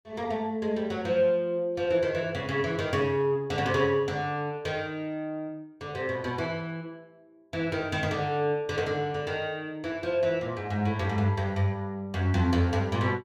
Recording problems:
none

